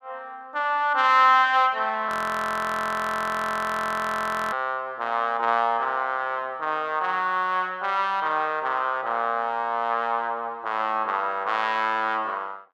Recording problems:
frozen audio; at 2 s for 2.5 s

